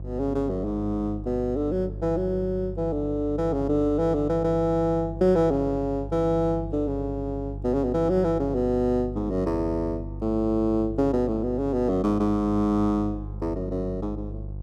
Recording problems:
mains hum; 50 Hz, harmonics up to 500 Hz, SNR 11 dB

